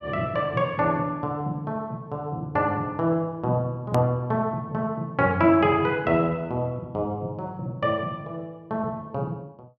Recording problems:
click at an edit; at 4 s

